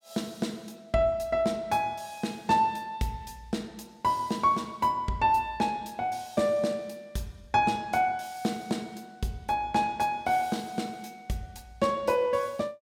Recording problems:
none

